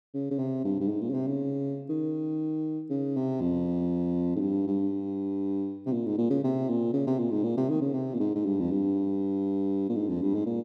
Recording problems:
none

